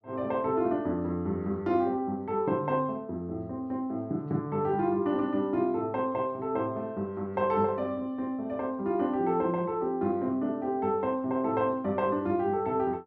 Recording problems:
none

